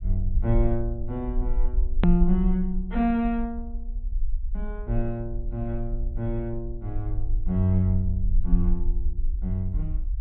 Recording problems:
low-pass filter; nothing above 4 kHz
rumble; below 46 Hz, SNR 3 dB
edit click; at 2 s

